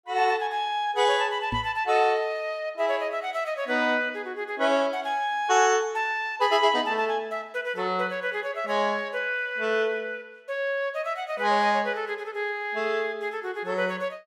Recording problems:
knock on the microphone; at 1.5 s; peak -2 dB vs average level

